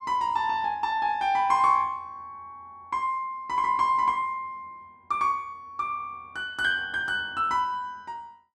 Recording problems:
none

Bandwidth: 13 kHz